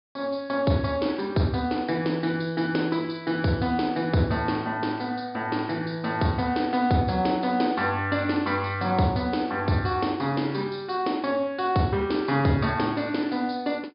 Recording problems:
treble missing; nothing above 5.1 kHz

